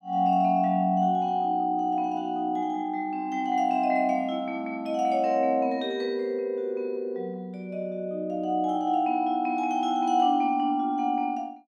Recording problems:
none

